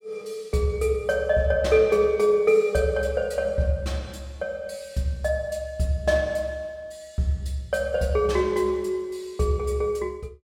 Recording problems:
none

